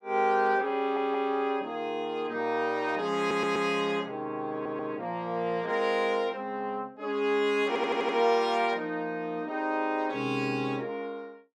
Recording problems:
stutter; 4 times, first at 1 s

